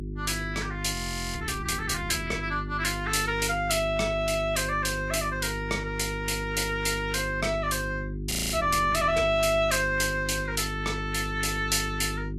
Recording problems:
lossy codec; Vorbis, log-spectral distance 4 dB, nothing above 12.7 kHz
electrical hum; 50 Hz, harmonics up to 400 Hz, SNR 8 dB
audio freezing; at 1 s and at 8.5 s

